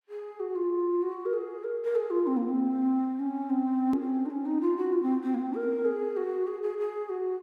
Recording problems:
click at an edit; at 4 s

